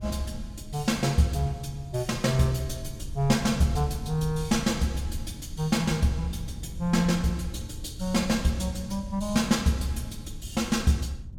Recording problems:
low-frequency rumble; below 98 Hz, SNR 13 dB

